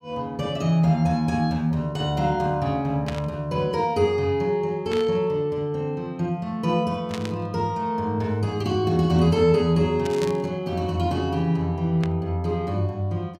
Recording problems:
static burst; 5 times, first at 3 s; peak -6 dB vs average level

